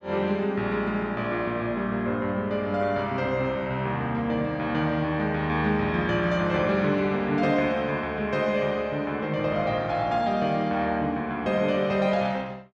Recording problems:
none

